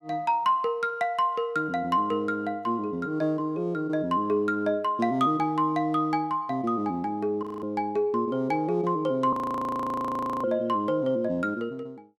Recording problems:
frozen audio; at 7.5 s and at 9.5 s for 1 s

